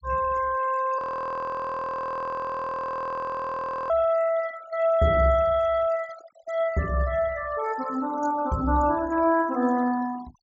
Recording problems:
low-pass filter; nothing above 7.7 kHz
denoising artefacts; signal-to-artefact ratio 19 dB
audio freezing; at 1 s for 3 s

